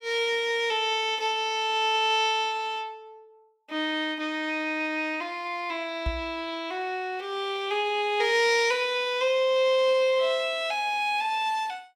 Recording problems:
knock on the microphone; at 6 s; peak -1 dB vs average level

